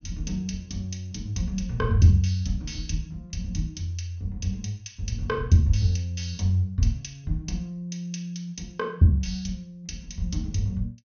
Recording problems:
treble cut off; nothing above 6.5 kHz

